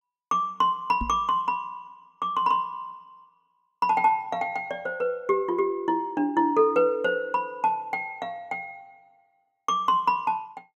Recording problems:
microphone bump; at 1 s; peak -3 dB vs average level

